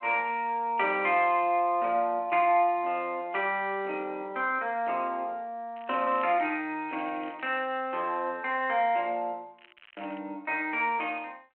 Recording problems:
phone line; 280 Hz to 3.3 kHz, G.726
crackling; at 6 s, at 7 s and at 9.5 s; loose cable, SNR 25 dB

